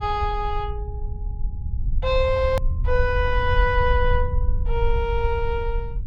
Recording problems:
rumble; below 72 Hz, SNR 2 dB
click at an edit; at 2.5 s

